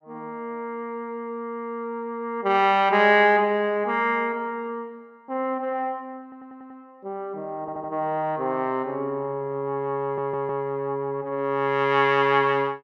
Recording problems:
audio stuttering; at 6 s, at 7.5 s and at 10 s

